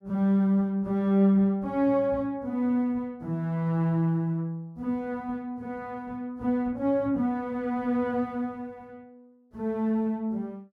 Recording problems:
none

